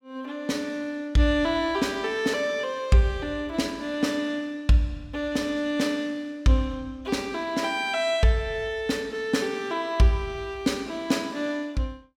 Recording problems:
none

